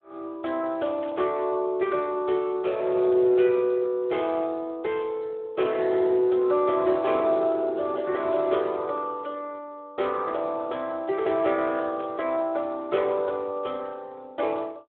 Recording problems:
phone line; 300 Hz to 3.4 kHz, Speex
static burst; at 1 s and at 12 s; peak -15 dB vs average level

